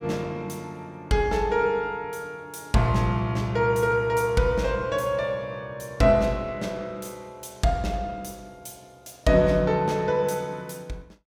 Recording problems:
none

